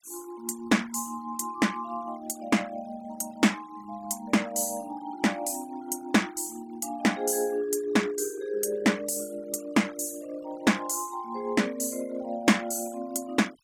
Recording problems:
noise reduction artefacts; signal-to-artefact ratio 22 dB

